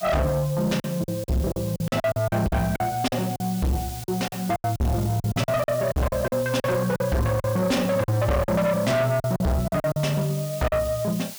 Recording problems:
distorted audio; soft clipping, signal-to-distortion ratio 6 dB
background hiss; slope +2 dB per octave, SNR 14 dB
lost packets; 13% of the sound replaced, filled with silence

